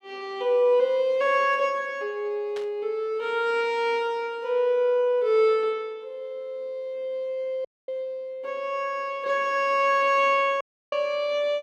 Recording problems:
burst of static; at 2.5 s; peak -12 dB vs average level
dropout; at 7.5 s and at 11 s

